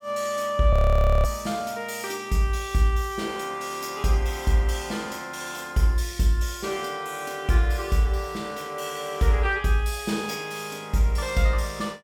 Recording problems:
frozen audio; at 0.5 s for 0.5 s

